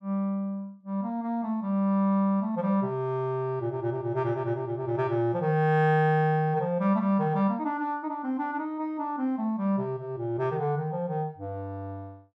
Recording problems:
none

